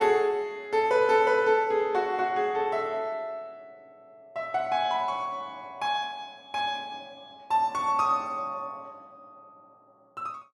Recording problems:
none

